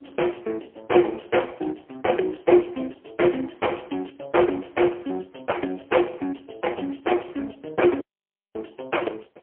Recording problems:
telephone audio; 300 Hz to 3.2 kHz, AMR-NB, then MP3
audio cutting out; at 8 s for 0.5 s

